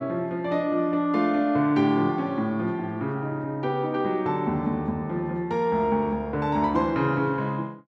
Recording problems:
none

